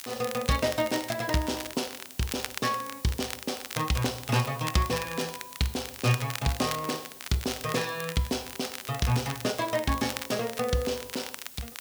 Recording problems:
background hiss; slope 0 dB per octave, SNR 15 dB
crackle; vinyl, SNR 9 dB

